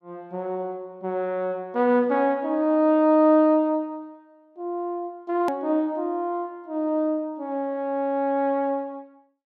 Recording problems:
edit click; at 5.5 s

